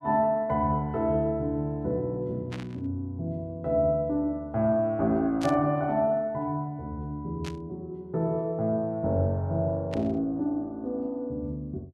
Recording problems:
static burst; 4 times, first at 2.5 s; peak -7 dB vs average level

